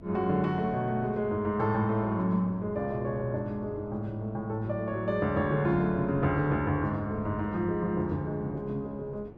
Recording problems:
hum; 50 Hz, harmonics up to 500 Hz, SNR 23 dB
wind noise; below 400 Hz, SNR 21 dB

